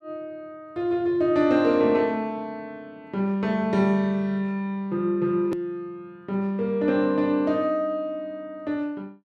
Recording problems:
click at an edit; at 5.5 s

